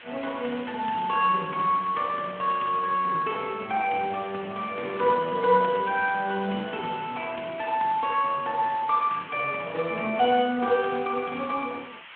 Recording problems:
telephone audio; 220 Hz to 3.3 kHz, Speex
background hiss; SNR 18 dB

